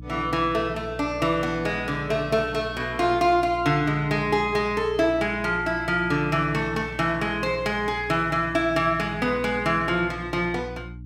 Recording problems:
hum; 60 Hz, harmonics up to 300 Hz, SNR 16 dB

